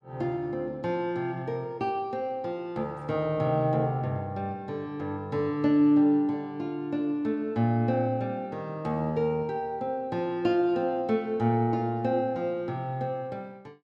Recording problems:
none

